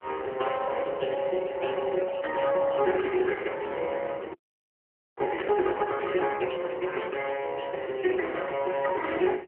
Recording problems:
telephone audio; 320 Hz to 2.9 kHz, AMR-NB
microphone handling noise; from 4 to 7 s; peak -5 dB vs average level
frozen audio; at 4.5 s for 1 s

